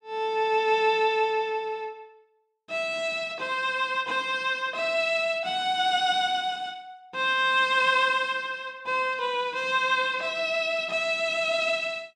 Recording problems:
none

